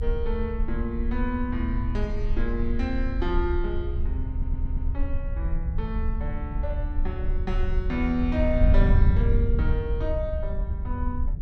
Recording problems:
low-frequency rumble; below 68 Hz, strongest tone 26 Hz, SNR 3 dB
wind on the microphone; below 80 Hz, SNR -2 dB
audio stuttering; at 4.5 s

